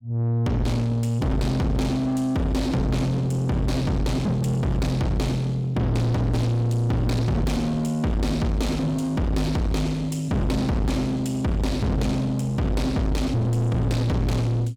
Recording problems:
distortion; soft clipping, signal-to-distortion ratio 6 dB

